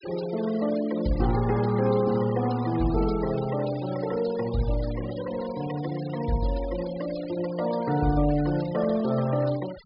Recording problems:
treble missing; nothing above 5.5 kHz
noise reduction artefacts; signal-to-artefact ratio 17 dB

